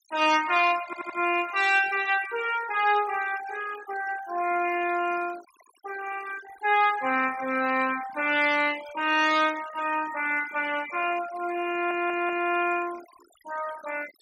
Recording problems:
noise reduction artefacts; signal-to-artefact ratio 17 dB
stutter; at 1 s and at 12 s

